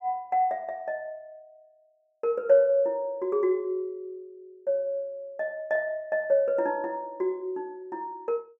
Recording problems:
none

